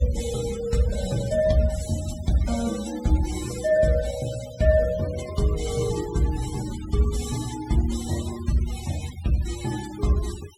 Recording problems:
noise reduction artefacts; signal-to-artefact ratio 15 dB

